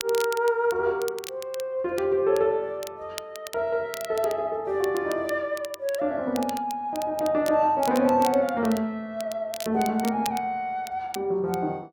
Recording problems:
crackling; vinyl, SNR 16 dB

